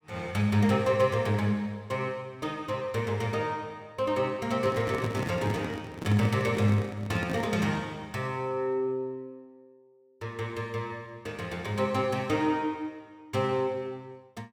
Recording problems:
handling noise; from 4.5 to 7.5 s; peak -1 dB vs average level

